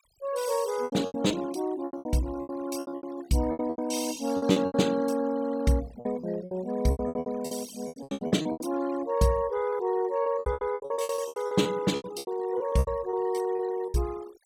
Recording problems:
denoising artefacts; signal-to-artefact ratio 17 dB
lost packets; 19% of the sound replaced, filled with repeated pitch periods

